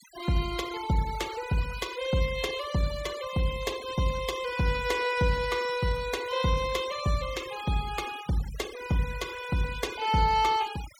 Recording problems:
denoising artefacts; signal-to-artefact ratio 14 dB

